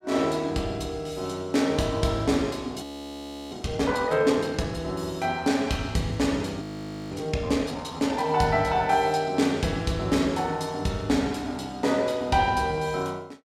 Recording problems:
audio freezing; at 3 s for 0.5 s and at 6.5 s

